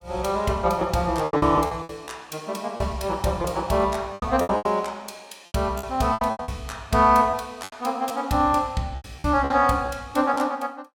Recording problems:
lost packets; 11% of the sound replaced, filled with repeated pitch periods

